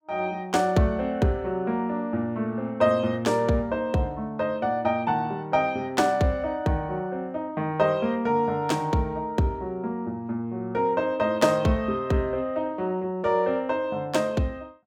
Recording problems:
none

